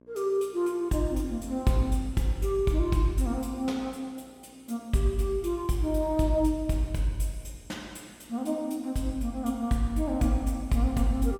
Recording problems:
hum; 60 Hz, harmonics up to 1.1 kHz, SNR 29 dB

